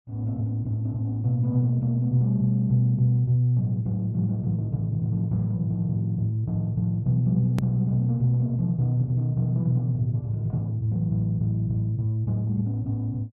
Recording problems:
click at an edit; at 7.5 s

